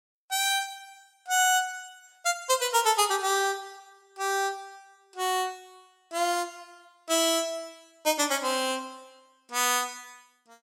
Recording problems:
none

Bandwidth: 16.5 kHz